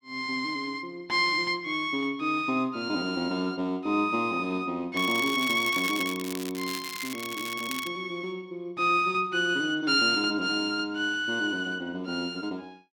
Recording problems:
crackling; from 5 to 6.5 s and from 6.5 to 8 s; loose cable, SNR 10 dB

